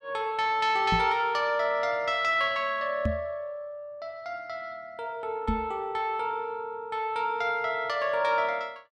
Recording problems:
knock on the microphone; at 1 s, at 3 s and at 5.5 s; peak +3 dB vs average level

